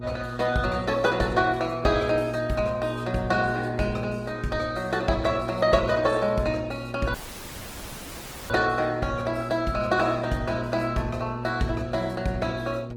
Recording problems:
lossy codec; Opus, log-spectral distance 4 dB, nothing above 19 kHz
hum; 60 Hz, harmonics up to 840 Hz, SNR 10 dB
dropout; at 7 s for 1.5 s

